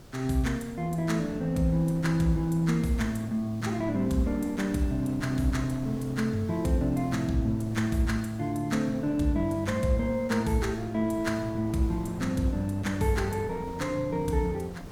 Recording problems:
hiss; slope +3 dB per octave, SNR 29 dB
wind noise; below 420 Hz, SNR 15 dB

